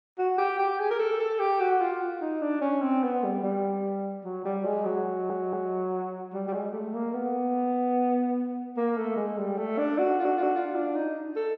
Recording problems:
stutter; at 5 s and at 10 s

